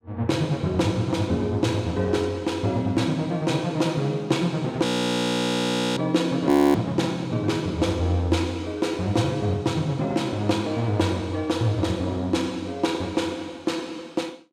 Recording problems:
frozen audio; at 5 s for 1 s and at 6.5 s

